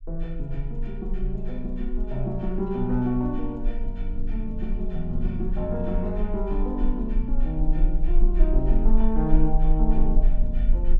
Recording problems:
low-frequency rumble; below 36 Hz, strongest tone 20 Hz, SNR 0 dB

